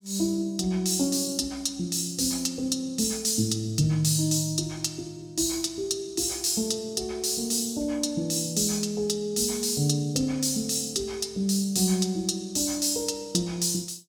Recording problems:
none

